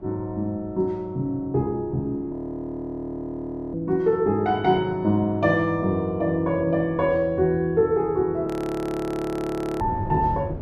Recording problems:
wind noise; below 310 Hz, SNR 18 dB
audio freezing; at 2.5 s for 1.5 s and at 8.5 s for 1.5 s

